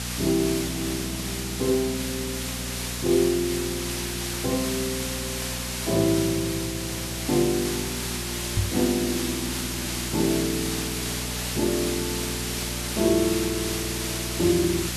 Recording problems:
electrical hum; 60 Hz, harmonics up to 720 Hz, SNR 9 dB
background hiss; slope +1 dB per octave, SNR 2 dB
microphone thump; at 8.5 s; peak +5 dB vs average level

